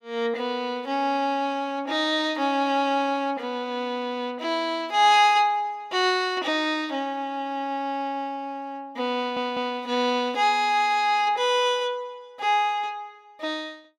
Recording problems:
audio stuttering; at 9 s

